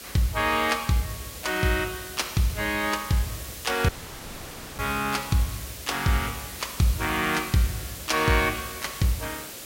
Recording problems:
background hiss; SNR 11 dB
audio cutting out; at 4 s for 1 s

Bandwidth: 16 kHz